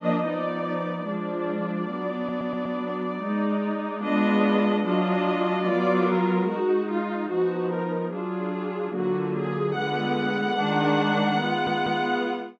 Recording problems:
audio stuttering; at 2 s and at 11 s

